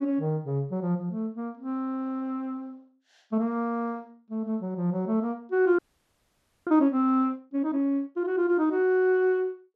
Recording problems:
audio freezing; at 6 s for 1 s

